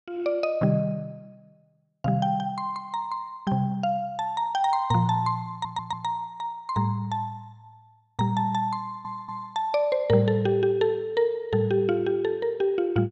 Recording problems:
audio stuttering; at 5.5 s and at 9 s

